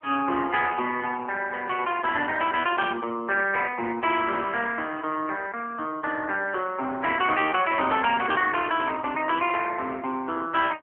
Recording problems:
phone line; 240 Hz to 3.3 kHz, AMR-NB

